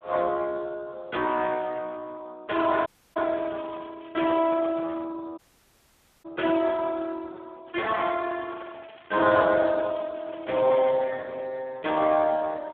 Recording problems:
phone line; 280 Hz to 3.2 kHz, Speex
dropout; at 3 s and at 5.5 s for 1 s
crackle; from 3 to 5 s, at 7.5 s and from 8 to 11 s; loose cable, SNR 27 dB

